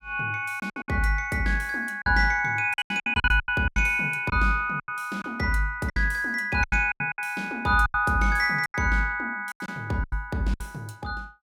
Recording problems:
lost packets; 13% of the sound replaced, filled with silence

